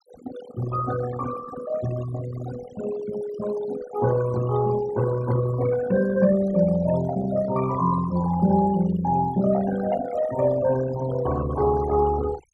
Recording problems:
noise reduction artefacts; signal-to-artefact ratio 12 dB

